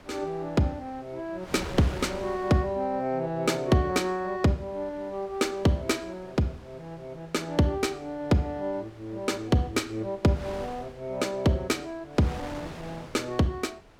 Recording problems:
wind noise; below 1.5 kHz, SNR 17 dB

